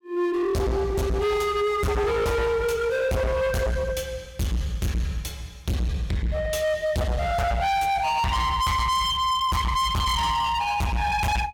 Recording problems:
distorted audio; hard clipping, uneven, signal-to-distortion ratio 6 dB

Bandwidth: 17.5 kHz